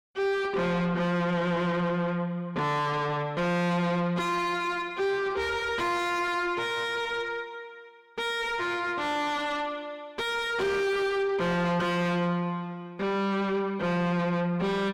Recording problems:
distortion; soft clipping, signal-to-distortion ratio 5 dB

